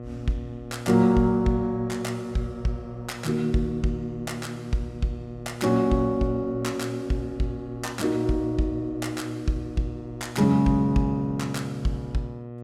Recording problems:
hum; 60 Hz, harmonics up to 1.2 kHz, SNR 12 dB

